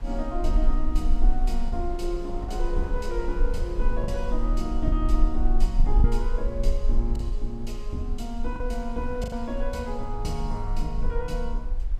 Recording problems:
rumble; below 40 Hz, strongest tone 26 Hz, SNR -3 dB
wind noise; below 290 Hz, SNR 15 dB
packet loss; 4% of the sound replaced, filled with the last packet

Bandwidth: 14.5 kHz